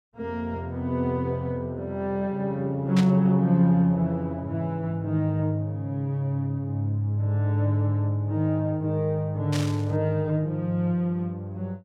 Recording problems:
burst of static; at 3 s and at 9.5 s; peak -4 dB vs average level

